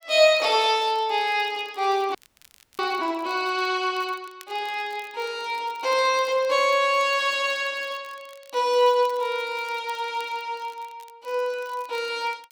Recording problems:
crackle; vinyl, SNR 28 dB
frozen audio; at 2 s for 0.5 s

